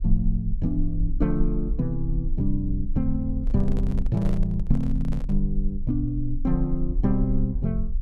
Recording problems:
rumble; below 42 Hz, strongest tone 18 Hz, SNR 4 dB
microphone handling noise; from 3.5 to 5.5 s; peak -8 dB vs average level

